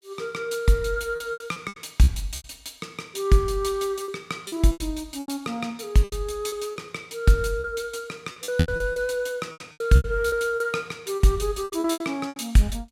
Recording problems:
packet loss; 13% of the sound replaced, filled with repeated pitch periods

